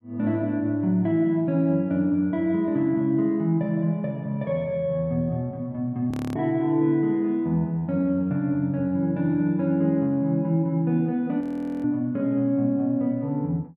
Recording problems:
audio freezing; at 6 s and at 11 s

